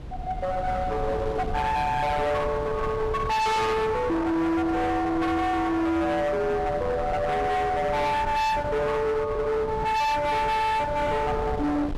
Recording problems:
distorted audio; hard clipping, uneven, signal-to-distortion ratio 7 dB
wind noise; below 440 Hz, SNR 11 dB

